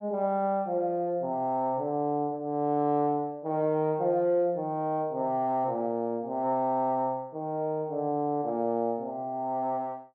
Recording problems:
none

